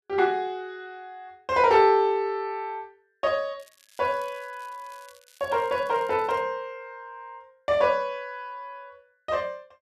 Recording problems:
crackling; from 3.5 to 6.5 s; loose cable, SNR 29 dB

